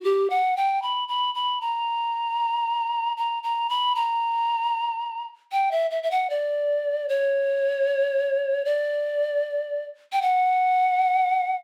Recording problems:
none

